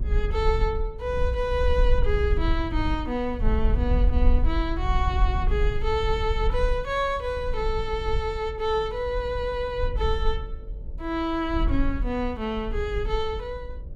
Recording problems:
hum; 50 Hz, harmonics up to 600 Hz, SNR 22 dB
wind noise; below 60 Hz, SNR 1 dB

